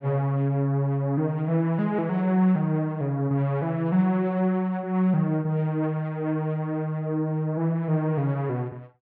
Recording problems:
none

